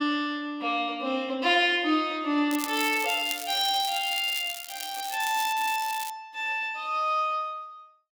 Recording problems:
crackle; from 2.5 to 6 s; loose cable, SNR 10 dB

